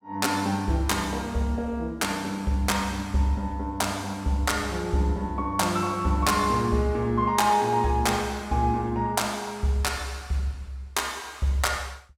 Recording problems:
none

